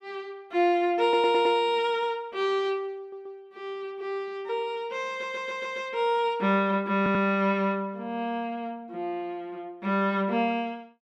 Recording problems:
audio stuttering; 4 times, first at 1 s

